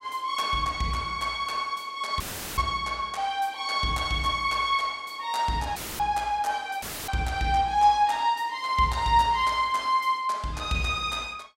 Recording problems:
dropout; at 2 s, at 6 s and at 7 s; filled with static

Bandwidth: 16 kHz